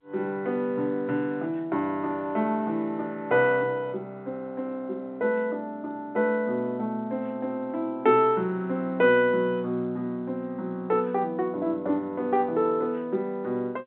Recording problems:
phone line; 150 Hz to 3.6 kHz, G.711

